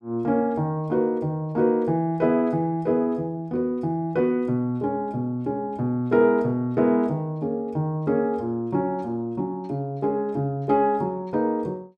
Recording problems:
none

